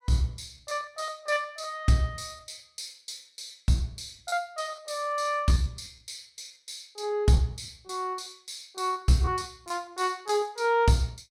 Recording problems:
packet loss; 12% of the sound replaced, filled with repeated pitch periods

